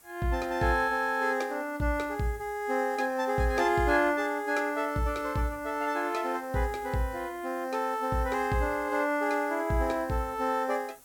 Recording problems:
background hiss; slope -2 dB per octave, SNR 25 dB

